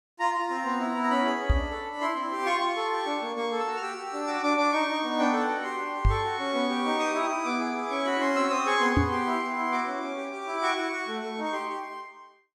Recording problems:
microphone thump; at 1.5 s, at 6 s and at 9 s; peak +7 dB vs average level

